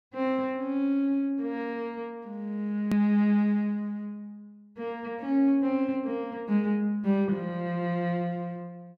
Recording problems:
edit click; at 3 s

